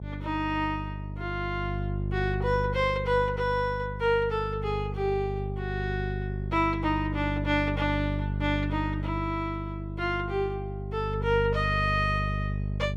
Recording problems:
electrical hum; 50 Hz, harmonics up to 450 Hz, SNR 4 dB

